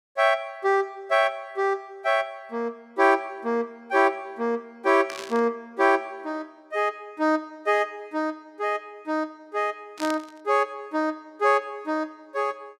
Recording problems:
static burst; at 5 s and at 10 s; peak -6 dB vs average level

